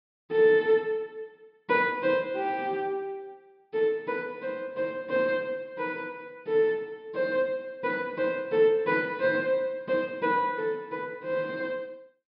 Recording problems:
treble missing; nothing above 5.5 kHz

